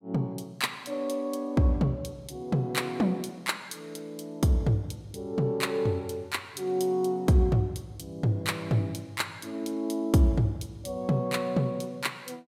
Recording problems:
none

